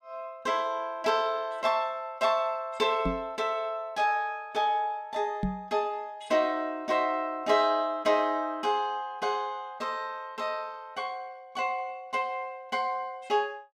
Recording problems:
microphone thump; at 3 s and at 5.5 s; peak +3 dB vs average level

